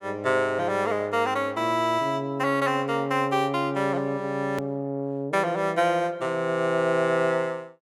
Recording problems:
click at an edit; at 4.5 s

